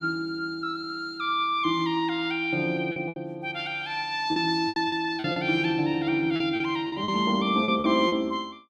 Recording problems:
lost packets; 7% of the sound replaced, filled with repeated pitch periods

